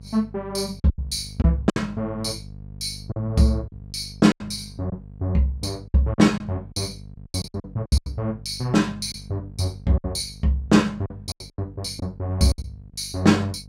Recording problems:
hum; 50 Hz, harmonics up to 500 Hz, SNR 18 dB
lost packets; 9% of the sound replaced, filled with silence

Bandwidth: 16 kHz